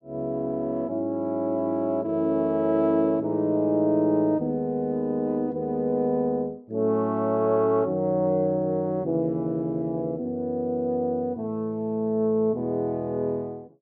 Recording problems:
none

